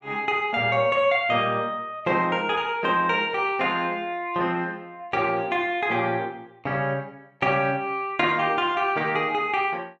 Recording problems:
none

